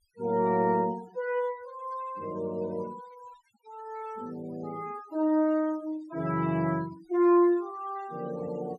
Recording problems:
noise reduction artefacts; signal-to-artefact ratio 23 dB

